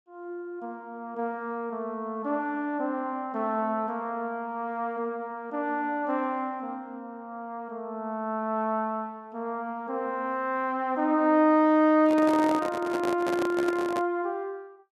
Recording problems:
microphone handling noise; from 12 to 14 s; peak 0 dB vs average level

